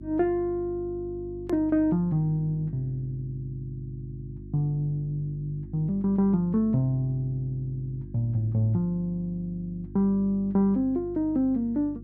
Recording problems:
electrical hum; 50 Hz, harmonics up to 350 Hz, SNR 14 dB
edit click; at 1.5 s

